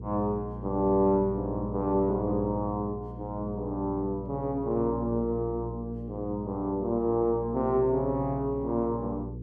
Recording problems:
electrical hum; 60 Hz, harmonics up to 480 Hz, SNR 10 dB

